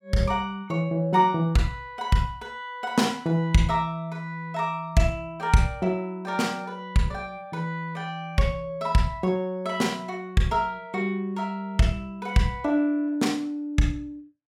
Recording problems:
none

